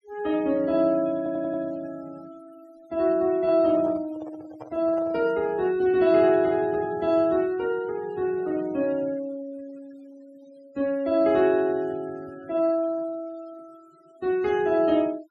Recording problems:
noise reduction artefacts; signal-to-artefact ratio 24 dB
audio stuttering; at 1 s
handling noise; from 3.5 to 5.5 s; peak -13 dB vs average level

